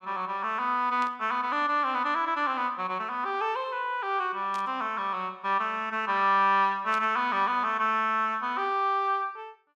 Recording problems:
burst of static; at 1 s, at 4.5 s and at 7 s; peak -12 dB vs average level

